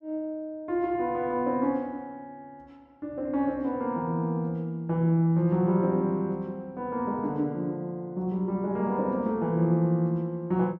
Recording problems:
none

